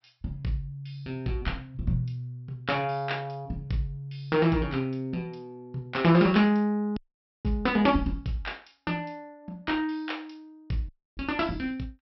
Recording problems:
treble missing; nothing above 5.6 kHz
dropout; at 7 s and at 11 s

